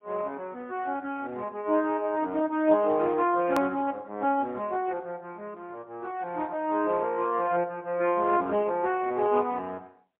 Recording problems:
telephone audio; 220 Hz to 3.4 kHz, AMR-NB, then MP3
edit click; at 3.5 s

